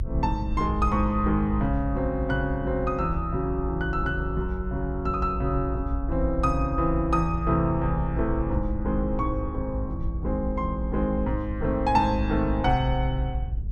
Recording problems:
rumble; below 66 Hz, strongest tone 54 Hz, SNR 5 dB

